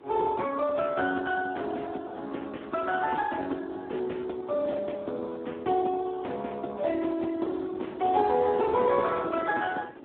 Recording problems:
phone line; 260 Hz to 3 kHz, Speex
wind on the microphone; below 670 Hz, SNR 19 dB

